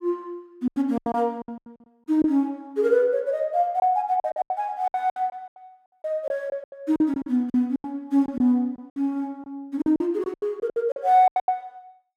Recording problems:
packet loss; 15% of the sound replaced, filled with silence

